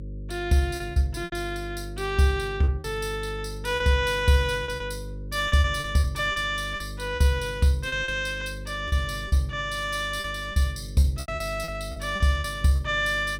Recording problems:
hum; 50 Hz, harmonics up to 550 Hz, SNR 12 dB
lost packets; 10% of the sound replaced, filled with repeated pitch periods

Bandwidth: 16.5 kHz